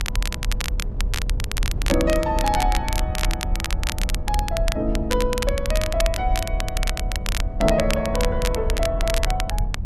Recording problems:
hum; 50 Hz, harmonics up to 500 Hz, SNR 18 dB
low-frequency rumble; below 58 Hz, strongest tone 36 Hz, SNR 3 dB
wind on the microphone; below 140 Hz, SNR 10 dB
crackling; vinyl, SNR 5 dB

